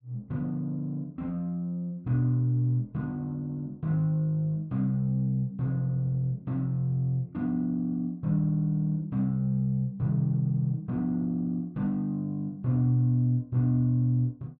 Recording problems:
treble cut off; nothing above 6.7 kHz

